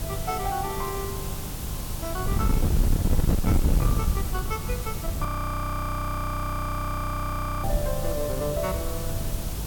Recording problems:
distortion; soft clipping, signal-to-distortion ratio 11 dB
electrical hum; 50 Hz, harmonics up to 350 Hz, SNR 8 dB
background hiss; SNR 5 dB
wind on the microphone; below 130 Hz, SNR -2 dB
audio freezing; at 5.5 s for 2.5 s

